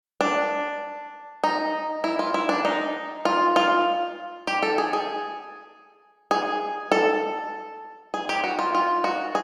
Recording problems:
none

